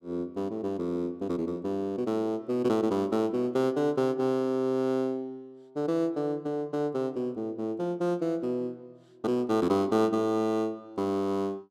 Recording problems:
none

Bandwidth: 14.5 kHz